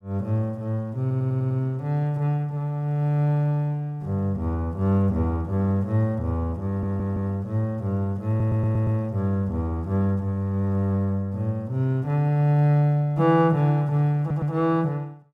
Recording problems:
audio stuttering; 4 times, first at 1 s

